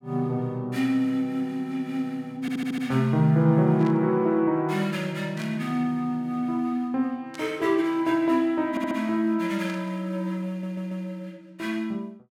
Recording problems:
stutter; at 2.5 s, at 8.5 s and at 10 s
burst of static; 4 times, first at 4 s; peak -12 dB vs average level

